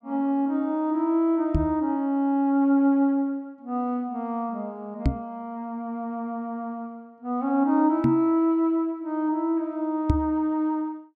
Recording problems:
knock on the microphone; 4 times, first at 1.5 s; peak +7 dB vs average level

